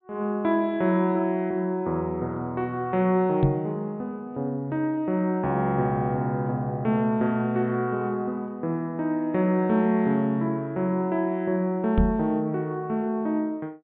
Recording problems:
treble missing; nothing above 4 kHz
microphone thump; at 3.5 s and at 12 s; peak +7 dB vs average level

